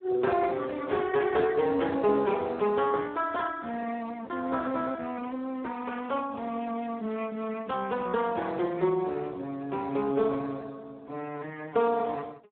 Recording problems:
phone line; 220 Hz to 3 kHz, Speex

